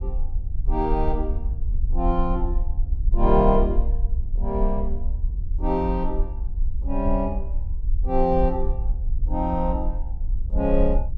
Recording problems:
rumble; below 50 Hz, SNR 2 dB

